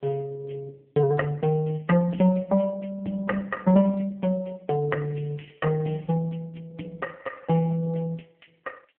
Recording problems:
telephone audio; 220 Hz to 3.6 kHz, AMR-NB

